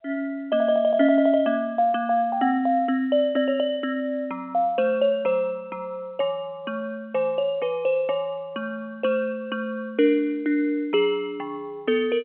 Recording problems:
telephone audio; 240 Hz to 3.2 kHz, G.711

